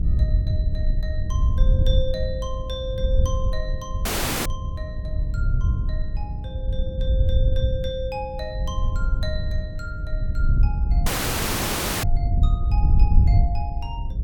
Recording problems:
electrical hum; 60 Hz, harmonics up to 660 Hz, SNR 7 dB
wind noise; below 82 Hz, SNR -10 dB
dropout; at 4 s and at 11 s for 1 s

